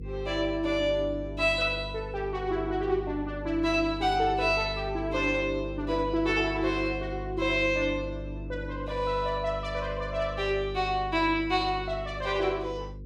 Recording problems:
electrical hum; 50 Hz, harmonics up to 500 Hz, SNR 11 dB

